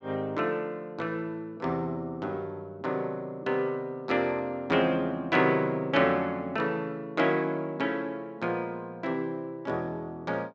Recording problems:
none

